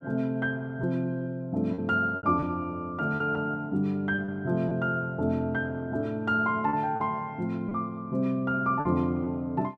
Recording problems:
packet loss; 4% of the sound replaced, filled with repeated pitch periods

